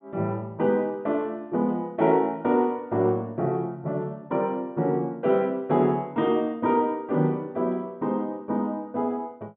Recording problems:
treble cut off; nothing above 4 kHz

